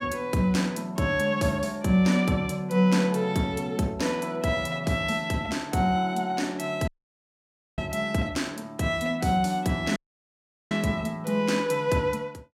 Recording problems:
dropout; at 7 s for 1 s and at 10 s for 1 s

